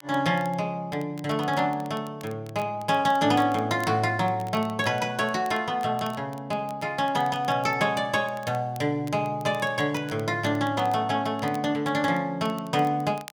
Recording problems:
crackling; vinyl, SNR 24 dB

